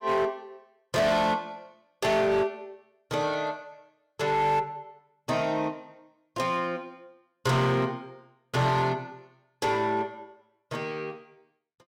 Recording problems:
distortion; hard clipping, signal-to-distortion ratio 11 dB

